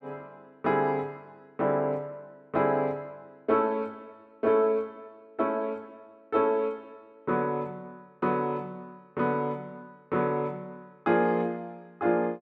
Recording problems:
none

